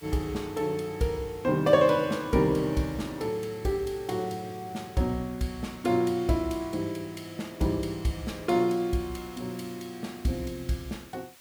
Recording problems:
hiss; slope 0 dB per octave, SNR 23 dB

